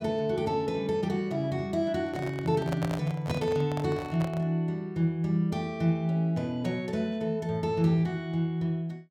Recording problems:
handling noise; from 2 to 4.5 s; peak -2 dB vs average level

